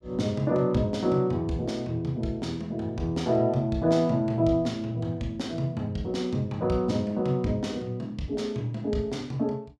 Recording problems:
none

